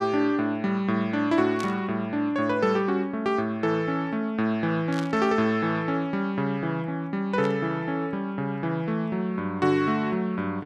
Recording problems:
static burst; at 1.5 s, at 5 s and at 7.5 s; peak -8 dB vs average level

